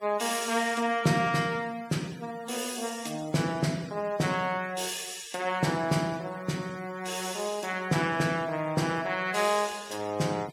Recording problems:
denoising artefacts; signal-to-artefact ratio 20 dB

